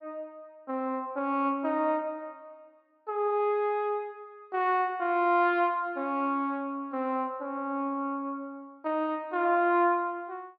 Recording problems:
treble missing; nothing above 5.5 kHz

